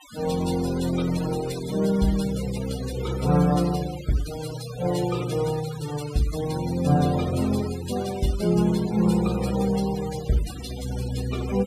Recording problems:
noise reduction artefacts; signal-to-artefact ratio 14 dB

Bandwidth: 14.5 kHz